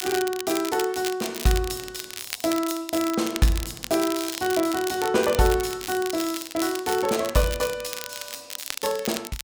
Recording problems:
crackle; vinyl, SNR 8 dB

